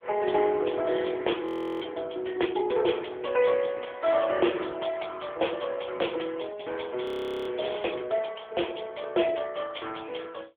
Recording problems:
telephone audio; 280 Hz to 3.4 kHz, AMR-NB
audio freezing; at 1.5 s and at 7 s

